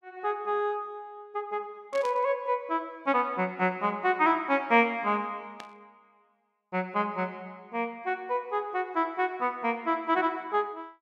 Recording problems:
burst of static; at 2 s and at 5.5 s; peak -10 dB vs average level

